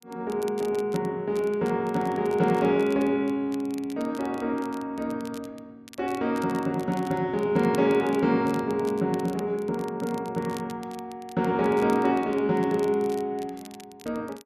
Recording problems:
crackling; vinyl, SNR 23 dB

